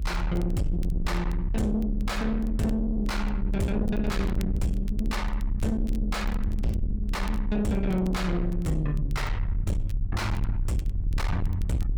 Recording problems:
distorted audio; soft clipping, signal-to-distortion ratio 6 dB
hum; 60 Hz, harmonics up to 1.1 kHz, SNR 22 dB
rumble; below 74 Hz, SNR 2 dB
crackle; vinyl, SNR 26 dB

